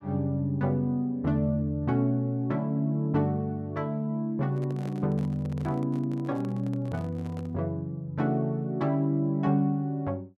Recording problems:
microphone handling noise; from 4.5 to 7.5 s; peak -11 dB vs average level

